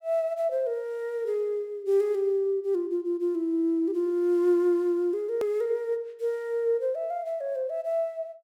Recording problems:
click at an edit; at 5.5 s

